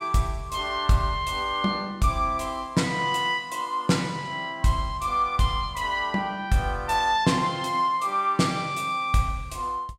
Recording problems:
none

